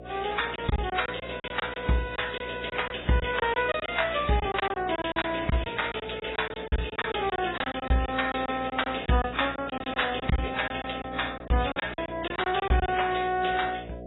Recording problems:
codec artefacts; MP3, then AAC, log-spectral distance 10 dB, nothing above 3.8 kHz
hum; 60 Hz, harmonics up to 720 Hz, SNR 15 dB
packet loss; 12% of the sound replaced, filled with silence

